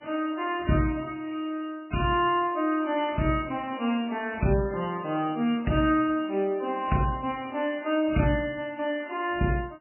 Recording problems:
lossy codec; MP3, log-spectral distance 4 dB, nothing above 2.4 kHz

